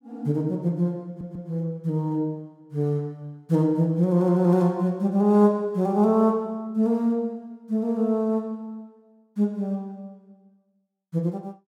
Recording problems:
audio stuttering; at 1 s

